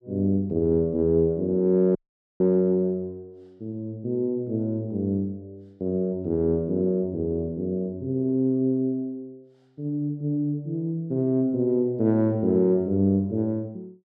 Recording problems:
audio cutting out; at 2 s

